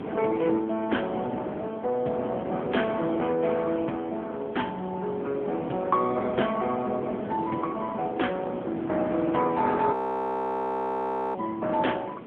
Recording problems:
telephone audio; 170 Hz to 3.4 kHz, AMR-NB
hiss; SNR 29 dB
wind on the microphone; below 570 Hz, SNR 9 dB
frozen audio; at 10 s for 1.5 s

